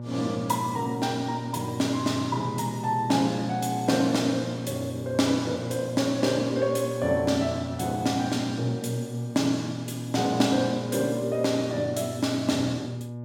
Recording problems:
hum; 60 Hz, harmonics up to 840 Hz, SNR 9 dB

